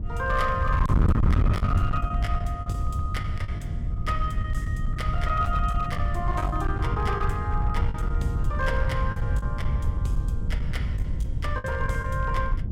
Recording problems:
distorted audio; hard clipping, uneven, signal-to-distortion ratio 7 dB
wind on the microphone; below 110 Hz, SNR -3 dB
packet loss; 7% of the sound replaced, filled with the last packet

